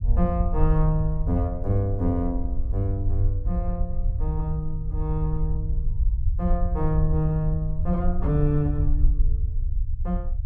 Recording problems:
rumble; below 64 Hz, SNR 0 dB

